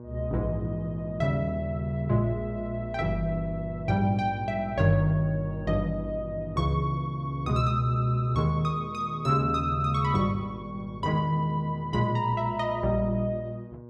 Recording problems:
electrical hum; 60 Hz, harmonics up to 1.1 kHz, SNR 16 dB

